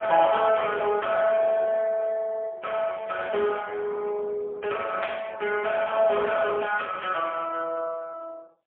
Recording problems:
phone line; 170 Hz to 2.2 kHz, AMR-NB, then MP3
burst of static; at 5 s; peak -3 dB vs average level

